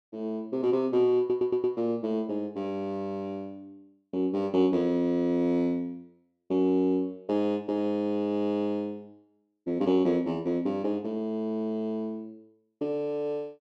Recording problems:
stutter; at 1 s

